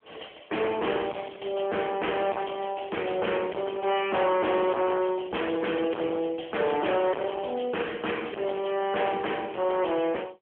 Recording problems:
phone line; 260 Hz to 3.3 kHz, AMR-NB
distortion; hard clipping, uneven, signal-to-distortion ratio 6 dB

